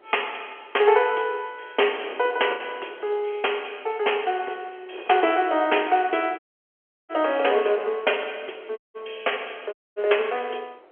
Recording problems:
telephone audio; 320 Hz to 3.3 kHz, G.711
wind noise; below 880 Hz, SNR 23 dB
lost packets; 0.8% of the sound replaced, filled with the last packet
dropout; at 6.5 s for 0.5 s, at 9 s and at 9.5 s

